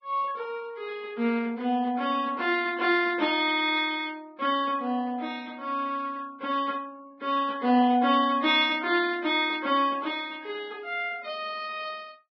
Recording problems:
lossy codec; Vorbis, log-spectral distance 3 dB

